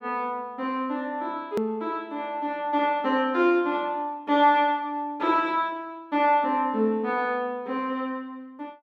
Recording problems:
edit click; at 1.5 s

